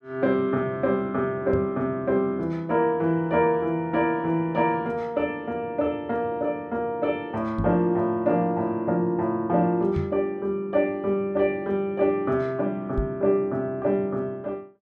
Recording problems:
microphone thump; 4 times, first at 1.5 s; peak +1 dB vs average level

